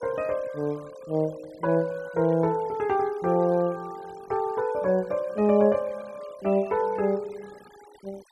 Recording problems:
noise reduction artefacts; signal-to-artefact ratio 24 dB

